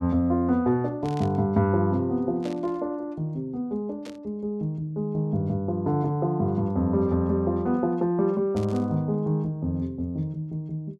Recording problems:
static burst; 4 times, first at 1 s; peak -13 dB vs average level

